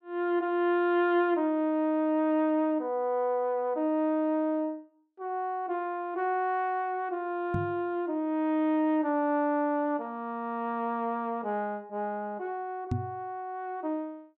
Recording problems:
microphone bump; at 7.5 s and at 13 s; peak +3 dB vs average level

